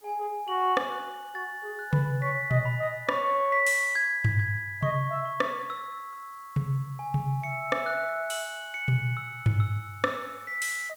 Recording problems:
background hiss; slope -1 dB per octave, SNR 28 dB

